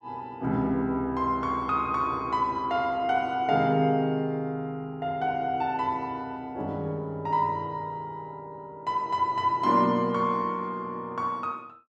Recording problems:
none

